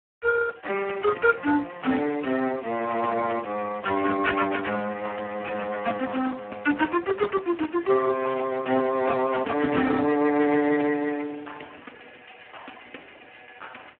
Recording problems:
phone line; 220 Hz to 3.1 kHz, Speex

